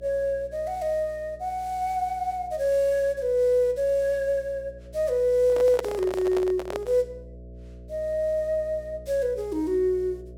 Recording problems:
mains hum; 60 Hz, harmonics up to 660 Hz, SNR 21 dB
microphone handling noise; from 5.5 to 7 s; peak 0 dB vs average level

